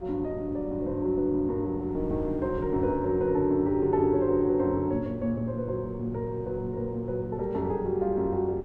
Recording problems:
wind on the microphone; below 210 Hz, SNR 16 dB

